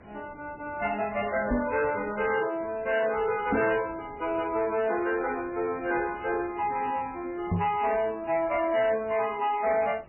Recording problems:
lossy codec; MP3, then MP3, log-spectral distance 4 dB, nothing above 2.4 kHz
distortion; soft clipping, signal-to-distortion ratio 11 dB
background hiss; SNR 23 dB
microphone bump; at 1.5 s, at 3.5 s and at 7.5 s; peak +5 dB vs average level

